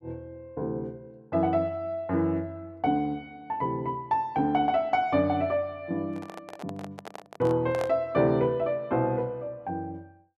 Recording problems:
handling noise; from 6 to 8 s; peak -4 dB vs average level

